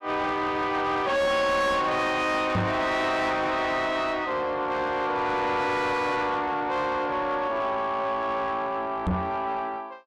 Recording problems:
distorted audio; soft clipping, signal-to-distortion ratio 5 dB
microphone bump; at 2.5 s and at 9 s; peak +4 dB vs average level

